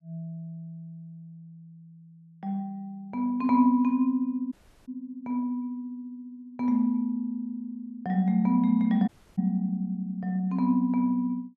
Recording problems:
audio cutting out; at 4.5 s and at 9 s

